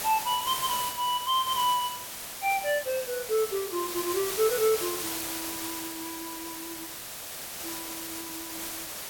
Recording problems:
background hiss; slope -1 dB per octave, SNR 5 dB

